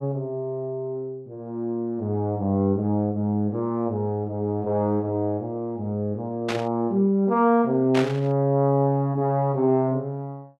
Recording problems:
burst of static; at 6.5 s and at 8 s; peak -1 dB vs average level

